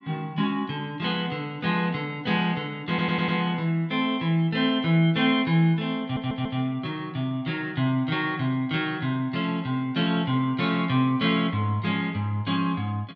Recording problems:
stutter; at 3 s and at 6 s

